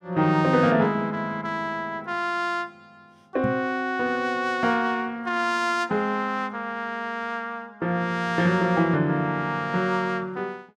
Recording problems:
knock on the microphone; at 3.5 s; peak 0 dB vs average level

